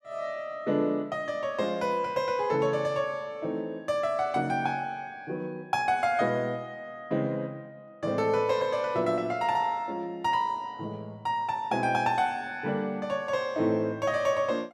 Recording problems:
none

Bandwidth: 15.5 kHz